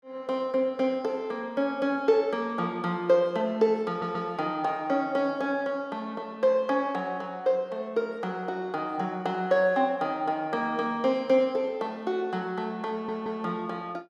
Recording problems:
stutter; at 4 s and at 13 s

